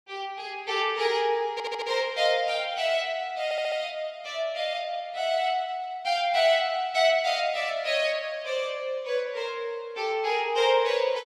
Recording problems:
stutter; at 1.5 s and at 3.5 s

